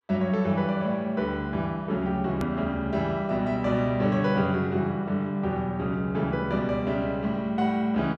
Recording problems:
edit click; at 2.5 s

